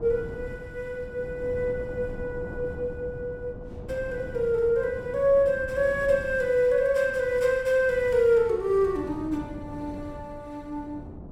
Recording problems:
wind on the microphone; below 300 Hz, SNR 15 dB

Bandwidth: 16 kHz